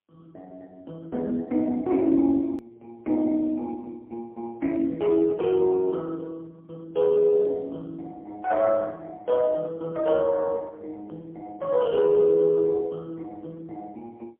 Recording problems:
telephone audio; 220 Hz to 3 kHz, AMR-NB, then MP3
hard cut with a click; at 2.5 s

